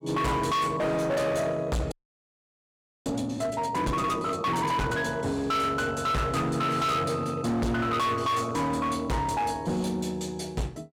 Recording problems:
distortion; hard clipping, uneven, signal-to-distortion ratio 7 dB
audio freezing; at 2 s for 1 s

